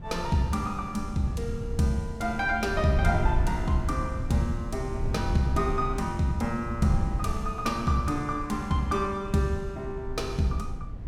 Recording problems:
wind noise; below 100 Hz, SNR 6 dB

